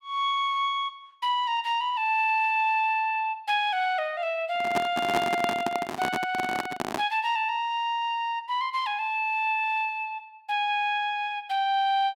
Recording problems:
microphone handling noise; from 4.5 to 7 s; peak +2 dB vs average level

